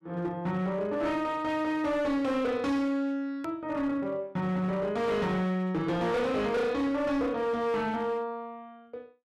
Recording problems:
distortion; hard clipping, signal-to-distortion ratio 10 dB
edit click; at 3.5 s

